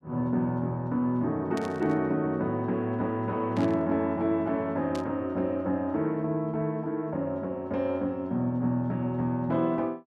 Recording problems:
burst of static; at 1.5 s, at 3.5 s and at 5 s; peak -9 dB vs average level

